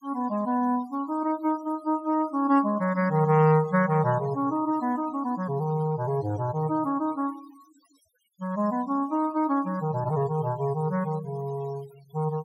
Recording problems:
noise reduction artefacts; signal-to-artefact ratio 23 dB

